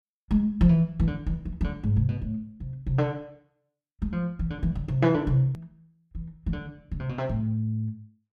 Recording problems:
click at an edit; at 5.5 s

